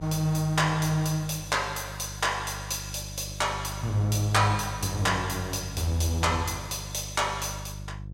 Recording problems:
hum; 50 Hz, harmonics up to 500 Hz, SNR 12 dB

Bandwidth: 16 kHz